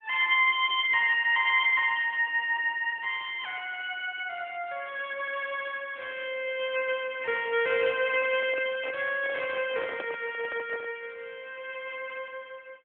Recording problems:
telephone audio; 320 Hz to 3.5 kHz, AMR-NB
handling noise; from 8 to 11 s; peak -5 dB vs average level

